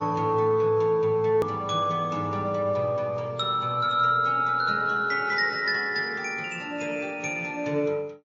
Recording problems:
lossy codec; MP3, then MP3, log-spectral distance 2 dB, nothing above 6.5 kHz
hard cut with a click; at 1.5 s

